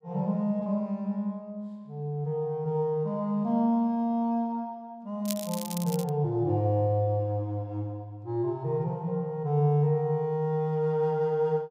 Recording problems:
crackling; at 5 s; loose cable, SNR 10 dB

